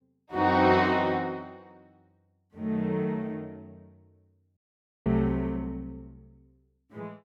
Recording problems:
dropout; at 4.5 s

